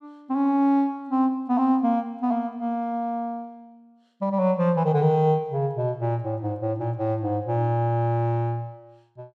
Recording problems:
none

